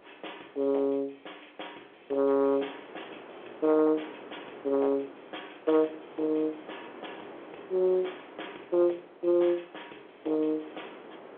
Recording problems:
phone line; 320 Hz to 3.4 kHz, G.711
distortion; soft clipping, signal-to-distortion ratio 16 dB
wind noise; below 1 kHz, SNR 20 dB

